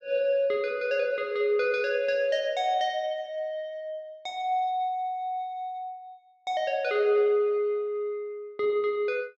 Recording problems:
none

